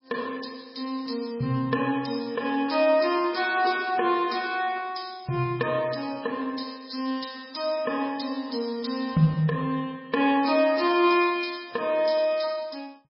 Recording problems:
codec artefacts; MP3, log-spectral distance 6 dB, nothing above 5.2 kHz

